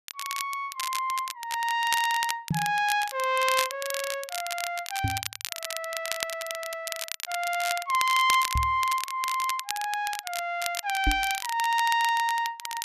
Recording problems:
crackling; vinyl, SNR 7 dB
knock on the microphone; 4 times, first at 2.5 s; peak +4 dB vs average level

